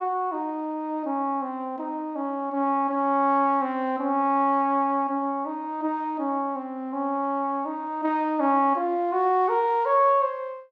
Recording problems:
none

